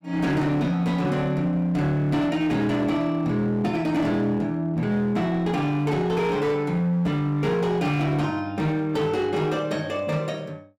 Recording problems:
distorted audio; hard clipping, signal-to-distortion ratio 12 dB

